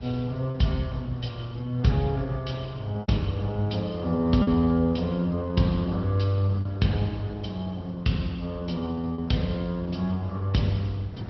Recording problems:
treble missing; nothing above 5.6 kHz
lossy codec; Opus, log-spectral distance 2 dB
wind on the microphone; below 200 Hz, SNR 16 dB
packet loss; 2% of the sound replaced, filled with repeated pitch periods

